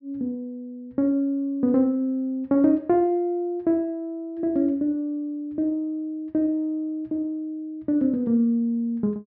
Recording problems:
treble cut off; nothing above 5.9 kHz

